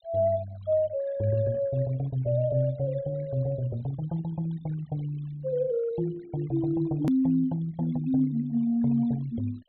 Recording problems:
low-pass filter; nothing above 4.2 kHz
noise reduction artefacts; signal-to-artefact ratio 23 dB
click at an edit; at 7 s

